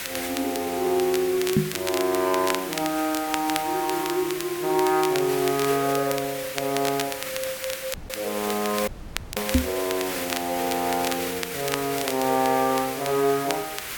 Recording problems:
background hiss; SNR 7 dB
crackle; vinyl, SNR 9 dB
microphone bump; at 1.5 s and at 9.5 s; peak +9 dB vs average level
audio cutting out; at 8 s and at 9 s

